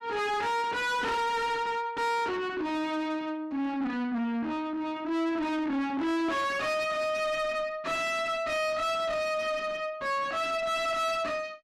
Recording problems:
distorted audio; soft clipping, signal-to-distortion ratio 5 dB

